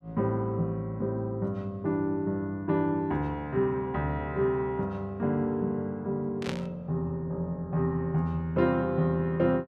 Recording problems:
burst of static; at 6.5 s; peak -3 dB vs average level

